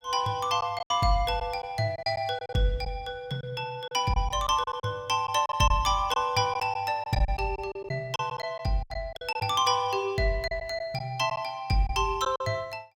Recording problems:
packet loss; 8% of the sound replaced, filled with silence

